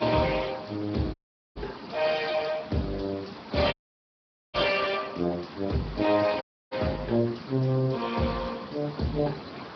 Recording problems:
treble missing; nothing above 5.2 kHz
lossy compression; Speex, log-spectral distance 8 dB
background hiss; SNR 13 dB
dropout; at 1 s, at 3.5 s for 1 s and at 6.5 s

